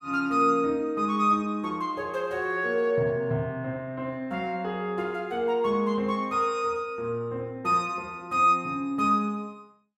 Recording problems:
none

